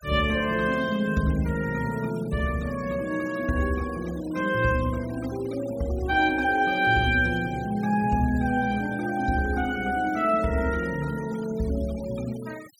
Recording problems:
denoising artefacts; signal-to-artefact ratio 20 dB

